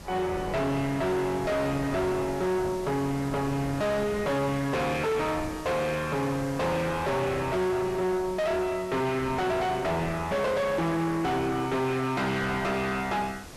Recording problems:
distortion; soft clipping, signal-to-distortion ratio 5 dB
hiss; slope -2 dB per octave, SNR 18 dB
wind noise; below 570 Hz, SNR 14 dB

